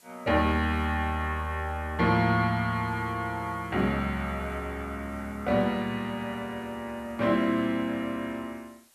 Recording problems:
background hiss; slope 0 dB per octave, SNR 29 dB

